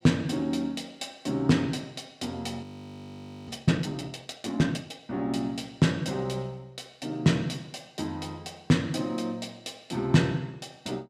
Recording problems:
frozen audio; at 2.5 s for 1 s

